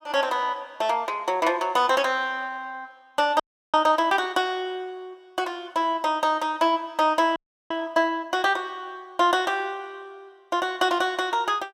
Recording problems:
frozen audio; at 3.5 s and at 7.5 s

